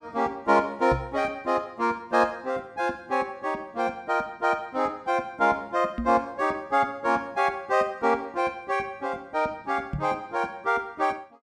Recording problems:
microphone thump; at 1 s, at 6 s and at 10 s; peak -1 dB vs average level

